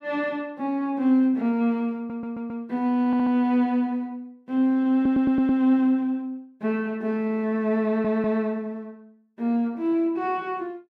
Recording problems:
stutter; 4 times, first at 2 s

